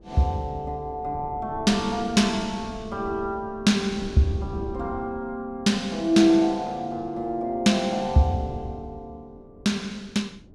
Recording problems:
wind on the microphone; below 300 Hz, SNR 18 dB

